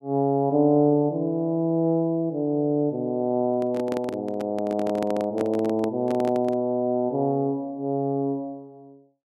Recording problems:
microphone handling noise; from 3.5 to 6.5 s; peak -3 dB vs average level

